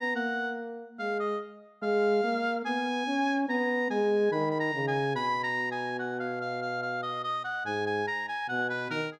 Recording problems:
none

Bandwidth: 12.5 kHz